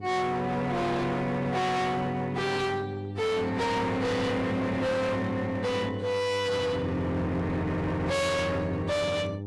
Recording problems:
codec artefacts; AAC, log-spectral distance 2 dB, nothing above 11.3 kHz
distortion; hard clipping, signal-to-distortion ratio 6 dB
hum; 50 Hz, harmonics up to 900 Hz, SNR 10 dB

